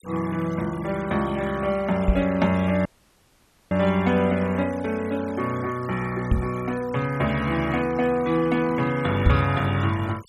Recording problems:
denoising artefacts; signal-to-artefact ratio 20 dB
microphone bump; at 2 s, at 6.5 s and at 9.5 s; peak +8 dB vs average level
dropout; at 3 s for 1 s

